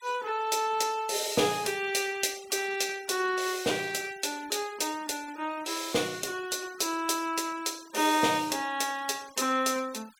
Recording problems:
noise reduction artefacts; signal-to-artefact ratio 19 dB

